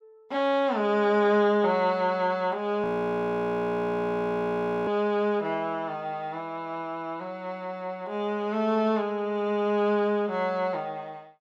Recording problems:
frozen audio; at 3 s for 2 s

